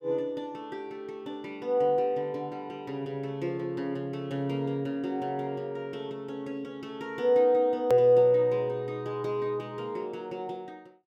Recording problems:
edit click; at 8 s

